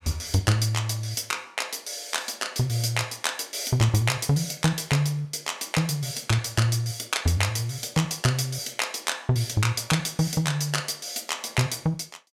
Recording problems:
none

